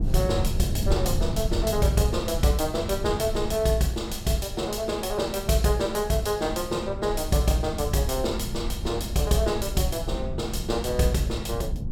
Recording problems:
low-frequency rumble; below 110 Hz, SNR 7 dB

